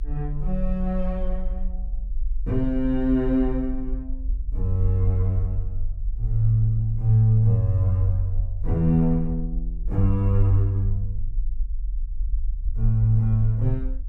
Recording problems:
low-frequency rumble; below 44 Hz, strongest tone 22 Hz, SNR 7 dB

